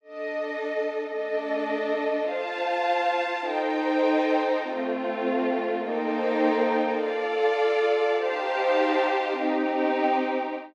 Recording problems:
none

